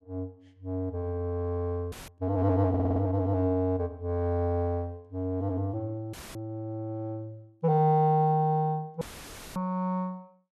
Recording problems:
dropout; at 2 s, at 6 s and at 9 s for 0.5 s; filled with static
stutter; at 2.5 s

